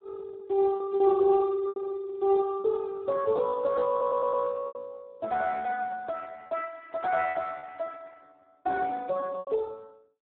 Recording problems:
telephone audio; 280 Hz to 2.2 kHz, Speex
lost packets; 5% of the sound replaced, filled with repeated pitch periods
stutter; at 4 s

